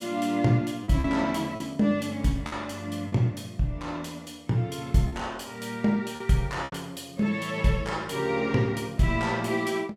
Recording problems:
lost packets; 4% of the sound replaced, filled with repeated pitch periods

